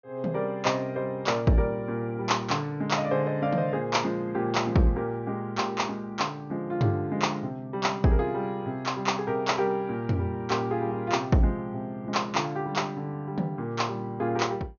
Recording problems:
treble missing; nothing above 6.6 kHz

